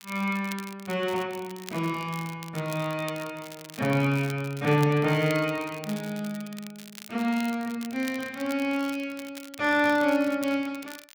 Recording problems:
crackling; vinyl, SNR 17 dB

